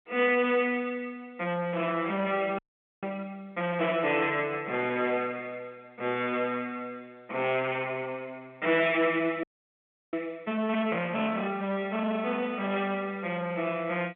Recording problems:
telephone audio; 260 Hz to 3.4 kHz, G.711
distortion; soft clipping, signal-to-distortion ratio 11 dB
frozen audio; at 2.5 s and at 9.5 s for 0.5 s

